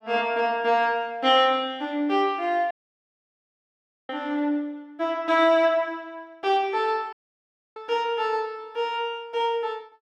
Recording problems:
audio cutting out; at 2.5 s for 1.5 s and at 7 s for 0.5 s

